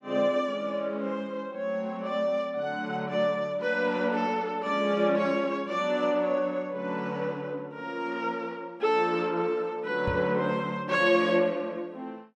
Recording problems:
microphone thump; at 10 s; peak -1 dB vs average level

